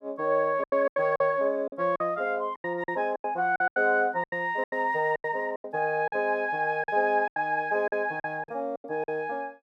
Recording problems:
packet loss; 14% of the sound replaced, filled with silence

